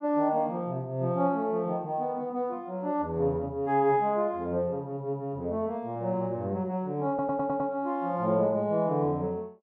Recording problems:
audio stuttering; at 7 s

